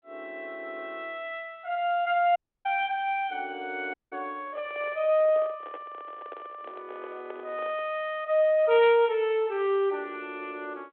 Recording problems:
telephone audio; 260 Hz to 3.5 kHz, G.726
dropout; at 2.5 s and at 4 s
microphone handling noise; from 4.5 to 8 s; peak -10 dB vs average level

